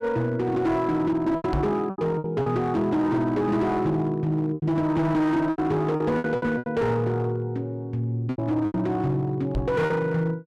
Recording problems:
distorted audio; hard clipping, uneven, signal-to-distortion ratio 11 dB
lost packets; 8% of the sound replaced, filled with repeated pitch periods
microphone bump; at 1.5 s and at 9.5 s; peak +2 dB vs average level

